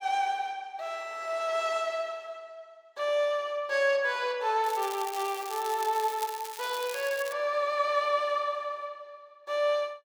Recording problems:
crackle; from 4.5 to 7.5 s; loose cable, SNR 12 dB

